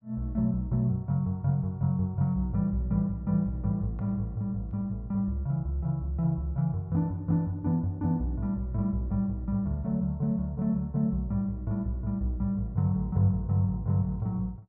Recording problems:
none

